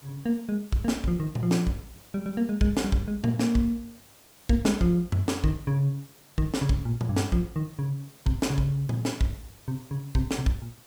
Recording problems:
hiss; slope -3 dB per octave, SNR 24 dB

